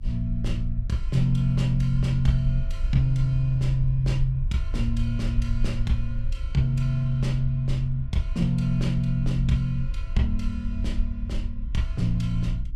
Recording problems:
hum; 50 Hz, harmonics up to 300 Hz, SNR 25 dB
rumble; below 56 Hz, SNR 6 dB

